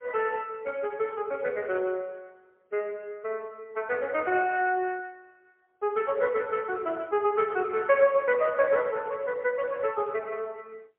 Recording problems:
telephone audio; 340 Hz to 3.1 kHz, AMR-NB, then MP3
handling noise; from 8 to 10 s; peak -14 dB vs average level

